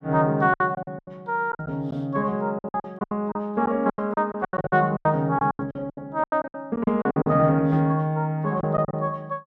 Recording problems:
lost packets; 16% of the sound replaced, filled with silence

